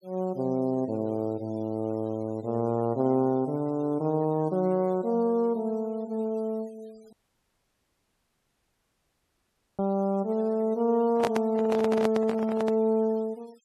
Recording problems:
denoising artefacts; signal-to-artefact ratio 27 dB
audio cutting out; at 7 s for 2.5 s
handling noise; from 11 to 13 s; peak +3 dB vs average level

